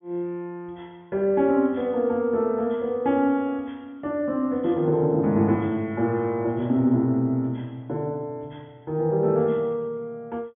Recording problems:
treble missing; nothing above 3.5 kHz

